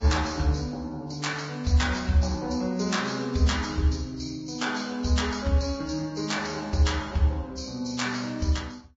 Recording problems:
lossy codec; Vorbis, log-spectral distance 5 dB, nothing above 7.3 kHz

